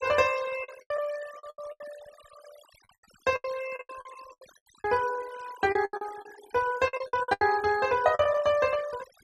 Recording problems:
denoising artefacts; signal-to-artefact ratio 18 dB
lost packets; 15% of the sound replaced, filled with the last packet

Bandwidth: 13.5 kHz